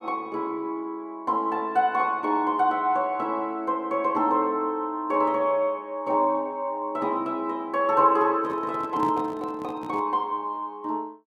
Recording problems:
handling noise; from 8.5 to 10 s; peak -6 dB vs average level

